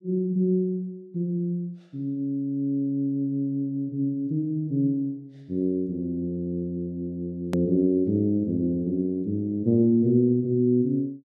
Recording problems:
click at an edit; at 7.5 s

